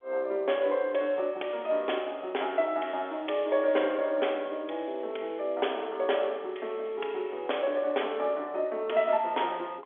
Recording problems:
telephone audio; 280 Hz to 3.5 kHz, G.711

